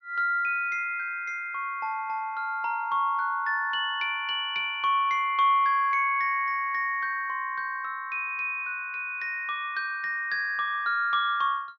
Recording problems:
treble cut off; nothing above 6.2 kHz

